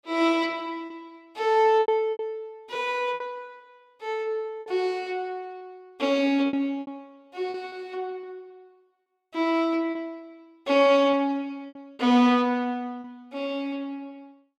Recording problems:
lost packets; 7% of the sound replaced, filled with repeated pitch periods

